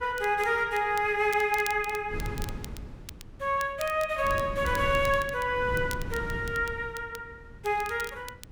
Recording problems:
wind noise; below 180 Hz, SNR 12 dB
crackle; vinyl, SNR 18 dB

